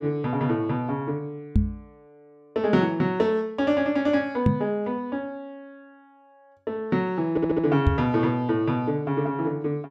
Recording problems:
knock on the microphone; at 1.5 s, at 4.5 s and at 8 s; peak +8 dB vs average level
stutter; at 7.5 s

